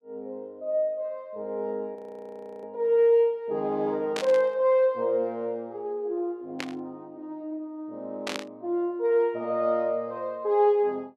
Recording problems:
audio freezing; at 2 s for 0.5 s
static burst; at 4 s, at 6.5 s and at 8.5 s; peak -2 dB vs average level

